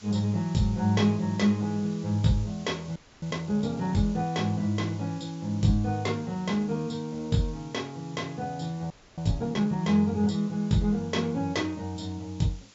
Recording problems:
treble cut off; nothing above 7.5 kHz
hiss; SNR 23 dB
audio freezing; at 3 s and at 9 s

